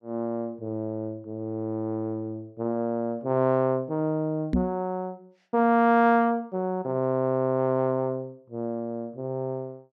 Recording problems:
microphone thump; at 4.5 s; peak +5 dB vs average level

